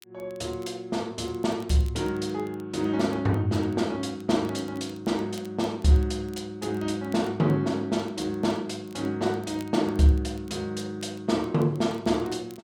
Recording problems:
crackling; vinyl, SNR 28 dB

